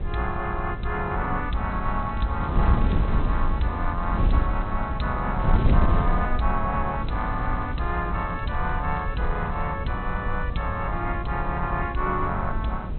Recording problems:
treble cut off; nothing above 4.1 kHz
wind on the microphone; below 100 Hz, SNR 0 dB
crackle; from 1.5 to 5 s and from 7 to 9.5 s; loose cable, SNR 28 dB

